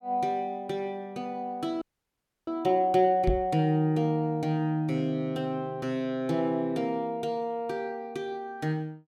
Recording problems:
audio freezing; at 2 s for 0.5 s
knock on the microphone; at 3.5 s; peak +5 dB vs average level

